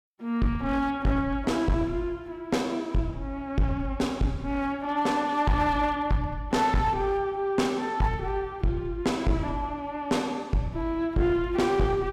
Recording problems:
distorted audio; hard clipping, uneven, signal-to-distortion ratio 9 dB

